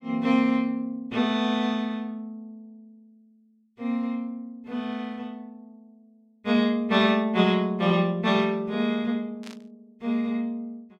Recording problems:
static burst; at 9.5 s; peak -13 dB vs average level

